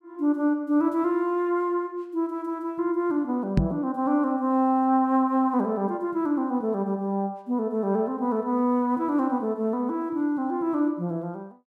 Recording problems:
knock on the microphone; at 3.5 s; peak +9 dB vs average level

